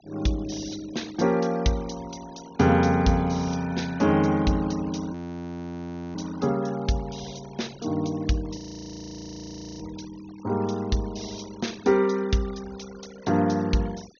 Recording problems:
low-pass filter; nothing above 6.5 kHz
denoising artefacts; signal-to-artefact ratio 21 dB
frozen audio; at 5 s for 1 s and at 8.5 s for 1 s

